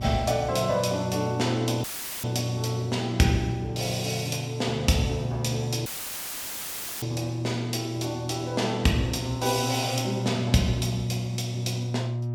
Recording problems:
electrical hum; 60 Hz, harmonics up to 600 Hz, SNR 5 dB
dropout; at 2 s and at 6 s for 1 s; filled with static

